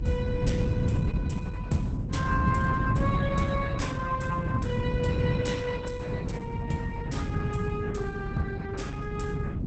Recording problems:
lossy compression; Opus, log-spectral distance 2 dB, nothing above 8.2 kHz
low-frequency rumble; below 160 Hz, SNR -4 dB

